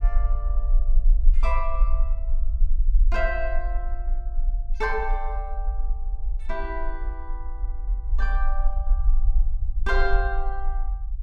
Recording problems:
rumble; below 42 Hz, strongest tone 20 Hz, SNR -4 dB

